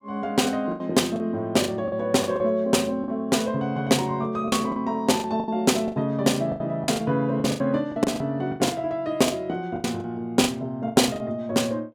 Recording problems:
packet loss; 12% of the sound replaced, filled with the last packet

